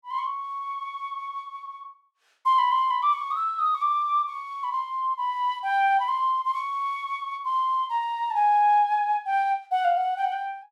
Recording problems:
none

